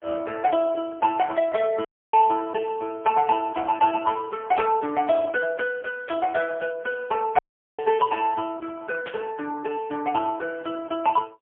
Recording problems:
telephone audio; 260 Hz to 2.2 kHz, AMR-NB, then MP3
audio cutting out; at 2 s and at 7.5 s
burst of static; 4 times, first at 4.5 s; peak -7 dB vs average level

